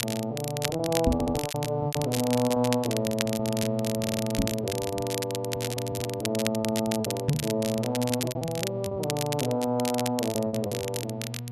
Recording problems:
hum; 60 Hz, harmonics up to 720 Hz, SNR 8 dB
crackle; vinyl, SNR 6 dB
lost packets; 15% of the sound replaced, filled with repeated pitch periods
microphone bump; at 1 s, at 4.5 s and at 7.5 s; peak +8 dB vs average level
audio stuttering; at 1 s and at 4 s

